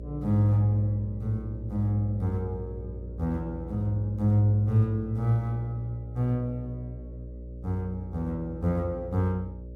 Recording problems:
hum; 60 Hz, harmonics up to 600 Hz, SNR 12 dB

